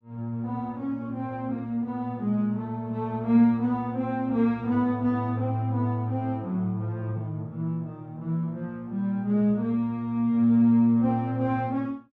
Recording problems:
none

